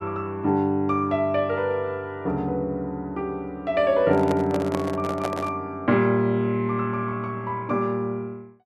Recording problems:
microphone handling noise; from 4 to 5.5 s; peak 0 dB vs average level

